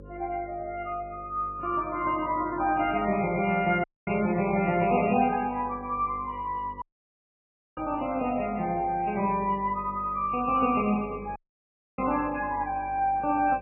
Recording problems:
lossy compression; MP3, log-spectral distance 3 dB, nothing above 2.4 kHz
hum; 50 Hz, harmonics up to 550 Hz, SNR 19 dB
audio cutting out; at 4 s, at 7 s for 1 s and at 11 s for 0.5 s

